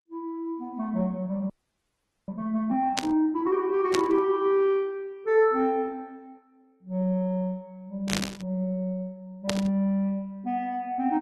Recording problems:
lossy codec; Opus, log-spectral distance 2 dB
audio freezing; at 1.5 s for 1 s
static burst; 4 times, first at 3 s; peak +4 dB vs average level

